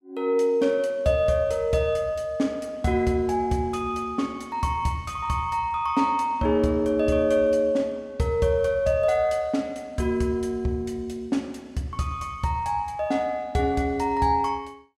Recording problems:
none

